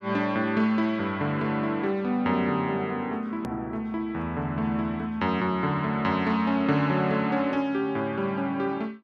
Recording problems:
click at an edit; at 3.5 s

